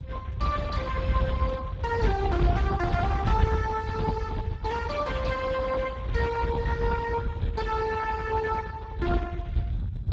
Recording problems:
lossy compression; Speex, log-spectral distance 2 dB, nothing above 7.3 kHz
low-frequency rumble; below 120 Hz, SNR 2 dB

